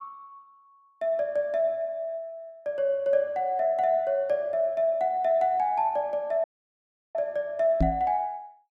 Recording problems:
dropout; at 6.5 s for 0.5 s
knock on the microphone; at 8 s; peak +6 dB vs average level

